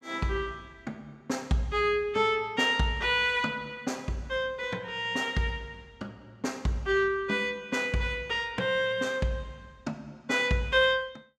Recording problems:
none

